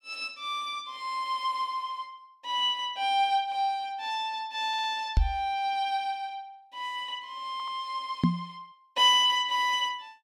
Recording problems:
audio stuttering; at 4.5 s and at 7.5 s
microphone bump; at 5 s and at 8 s; peak +8 dB vs average level

